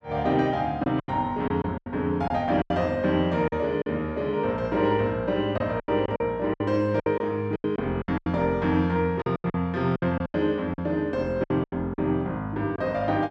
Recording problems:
lost packets; 11% of the sound replaced, filled with silence

